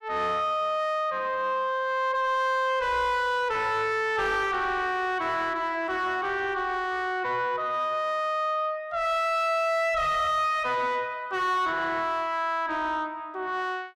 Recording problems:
distorted audio; soft clipping, signal-to-distortion ratio 7 dB

